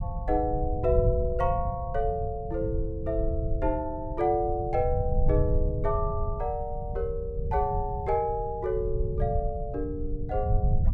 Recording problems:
low-frequency rumble; below 98 Hz, SNR 2 dB

